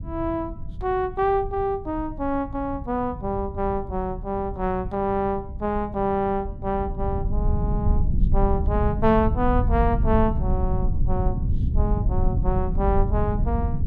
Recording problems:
low-frequency rumble; below 96 Hz, SNR 1 dB

